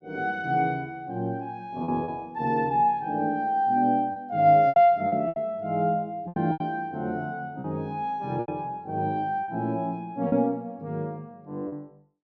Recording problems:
lost packets; 6% of the sound replaced, filled with repeated pitch periods

